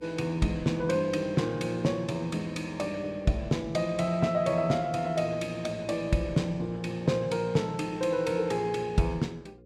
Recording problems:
hum; 60 Hz, harmonics up to 540 Hz, SNR 25 dB

